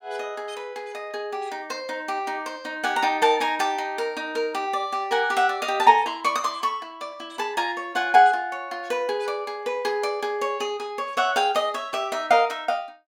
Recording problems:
none

